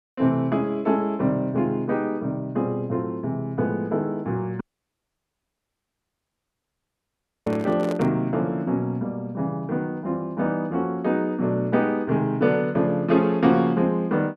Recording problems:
dropout; at 4.5 s for 3 s
handling noise; at 7.5 s; peak -4 dB vs average level

